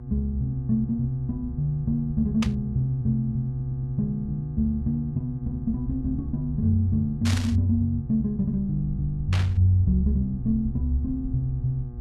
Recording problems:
hum; 60 Hz, harmonics up to 840 Hz, SNR 16 dB
low-frequency rumble; below 68 Hz, SNR 13 dB
burst of static; at 2.5 s, at 7.5 s and at 9.5 s; peak -2 dB vs average level
audio stuttering; at 3.5 s

